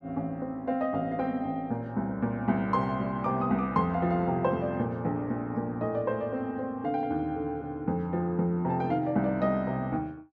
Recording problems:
none

